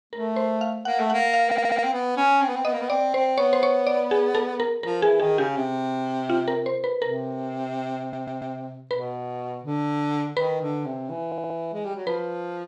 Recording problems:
stutter; at 1.5 s, at 8 s and at 11 s

